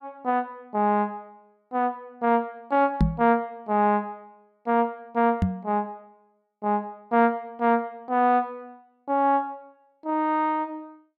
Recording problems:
microphone bump; at 3 s and at 5.5 s; peak +7 dB vs average level

